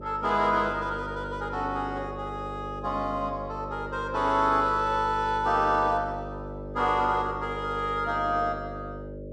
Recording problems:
hum; 50 Hz, harmonics up to 600 Hz, SNR 11 dB

